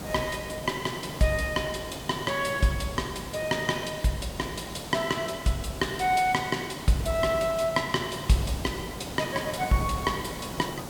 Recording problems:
background hiss; SNR 10 dB

